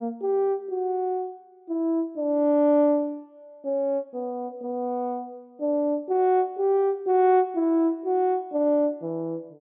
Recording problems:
treble missing; nothing above 4 kHz

